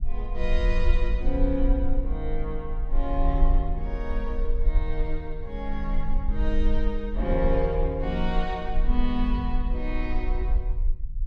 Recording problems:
low-frequency rumble; below 42 Hz, strongest tone 26 Hz, SNR -2 dB

